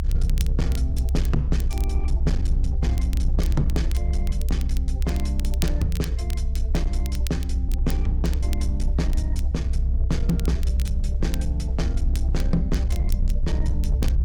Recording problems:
distorted audio; hard clipping, signal-to-distortion ratio 12 dB
rumble; below 64 Hz, SNR -5 dB
crackling; vinyl, SNR 13 dB

